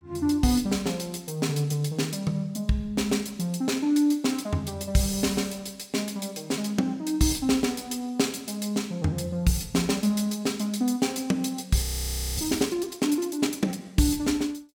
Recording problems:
frozen audio; at 12 s for 0.5 s

